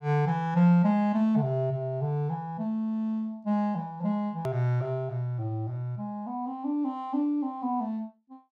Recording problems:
edit click; at 4.5 s

